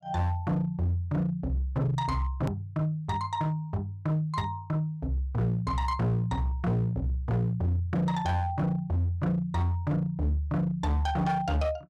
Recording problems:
distortion; hard clipping, uneven, signal-to-distortion ratio 10 dB
hard cut with a click; at 2.5 s

